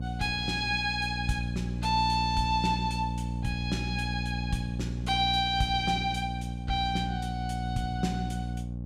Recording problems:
hum; 60 Hz, harmonics up to 600 Hz, SNR 4 dB

